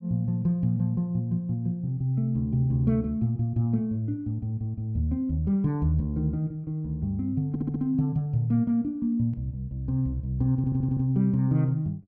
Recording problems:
stutter; at 7.5 s and at 11 s

